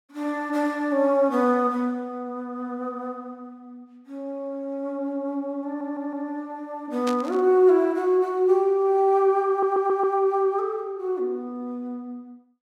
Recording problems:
audio stuttering; at 5.5 s and at 9.5 s
burst of static; at 7 s; peak -6 dB vs average level

